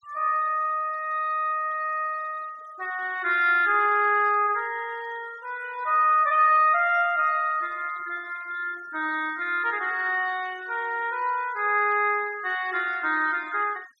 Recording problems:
denoising artefacts; signal-to-artefact ratio 26 dB

